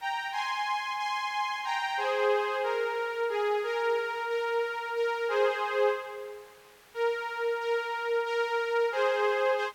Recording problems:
background hiss; SNR 27 dB

